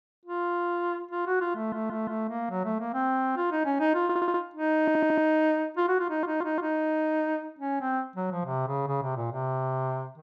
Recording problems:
stutter; 4 times, first at 1.5 s

